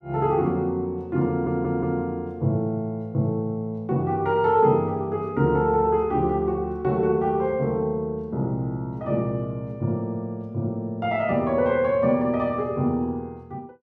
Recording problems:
stutter; at 1.5 s

